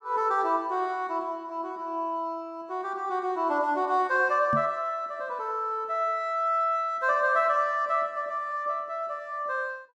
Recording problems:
microphone bump; at 4.5 s; peak -1 dB vs average level

